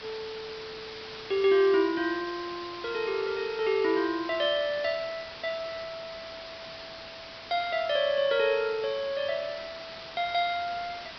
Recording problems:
low-pass filter; nothing above 5.5 kHz
background hiss; SNR 13 dB

